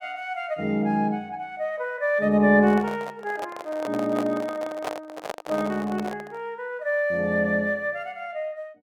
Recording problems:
handling noise; from 2.5 to 6.5 s; peak 0 dB vs average level

